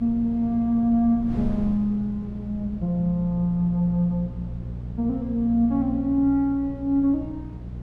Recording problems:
hum; 60 Hz, harmonics up to 420 Hz, SNR 13 dB
wind on the microphone; below 180 Hz, SNR 16 dB

